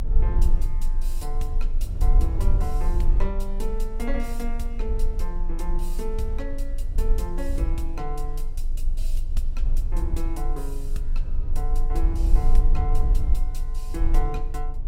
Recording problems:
rumble; below 42 Hz, strongest tone 22 Hz, SNR -9 dB

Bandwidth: 16 kHz